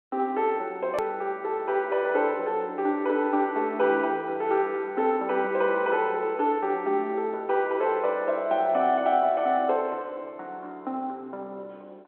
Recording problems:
telephone audio; 260 Hz to 3.6 kHz, G.711
click at an edit; at 1 s

